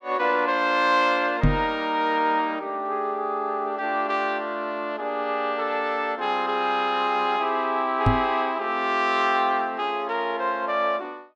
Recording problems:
knock on the microphone; at 1.5 s and at 8 s; peak +7 dB vs average level

